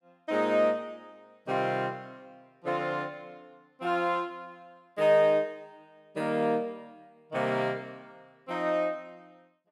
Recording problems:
none

